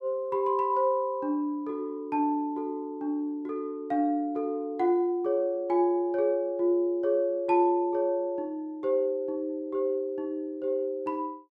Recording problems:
none

